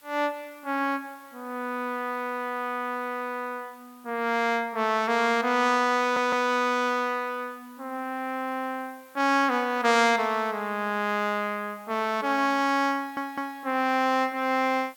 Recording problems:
background hiss; slope 0 dB per octave, SNR 28 dB
stutter; at 6 s and at 13 s

